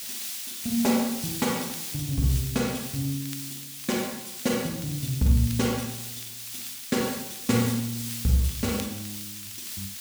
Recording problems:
hiss; slope +5 dB per octave, SNR 6 dB
crackling; vinyl, SNR 21 dB

